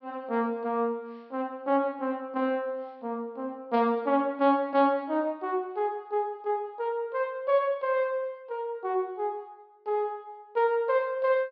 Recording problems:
low-pass filter; nothing above 5.5 kHz

